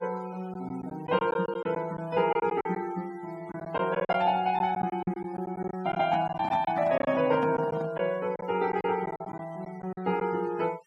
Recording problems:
noise reduction artefacts; signal-to-artefact ratio 22 dB
lost packets; 9% of the sound replaced, filled with silence
microphone handling noise; from 6 to 8 s; peak -3 dB vs average level

